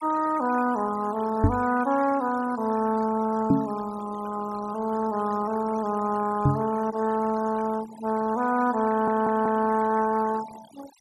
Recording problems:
denoising artefacts; signal-to-artefact ratio 16 dB
knock on the microphone; at 1.5 s, at 3.5 s and at 6.5 s; peak +8 dB vs average level
stutter; at 9 s

